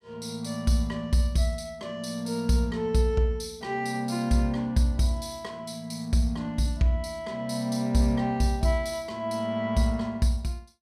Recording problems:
none

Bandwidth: 14.5 kHz